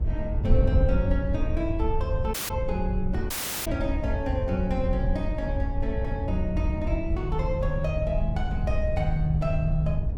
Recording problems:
wind noise; below 90 Hz, SNR -1 dB
audio cutting out; at 2.5 s and at 3.5 s

